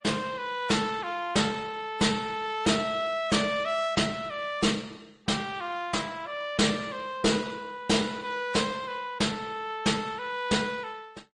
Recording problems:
codec artefacts; MP3, then Opus, log-spectral distance 3 dB, nothing above 9.2 kHz
distortion; hard clipping, signal-to-distortion ratio 11 dB

